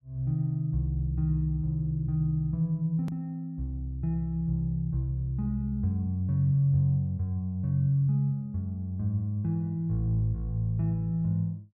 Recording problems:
edit click; at 3 s

